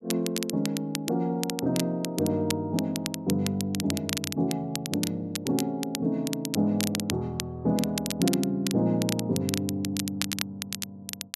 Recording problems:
crackling; vinyl, SNR 6 dB

